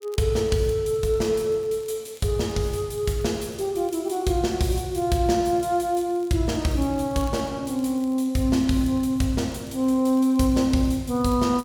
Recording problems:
crackle; vinyl, SNR 29 dB

